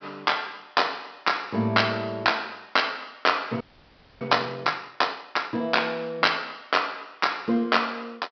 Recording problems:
low-pass filter; nothing above 5.5 kHz
audio freezing; at 3.5 s for 0.5 s

